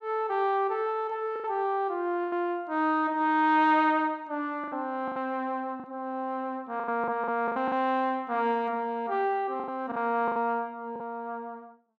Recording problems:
packet loss; 8% of the sound replaced, filled with the last packet

